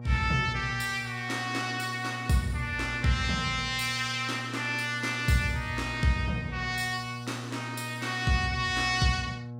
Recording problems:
hum; 60 Hz, harmonics up to 1.1 kHz, SNR 11 dB

